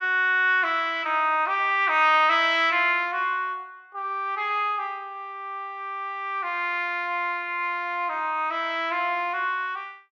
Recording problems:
none

